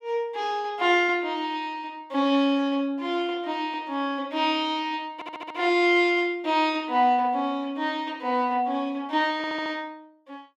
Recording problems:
audio stuttering; at 5 s and at 9.5 s

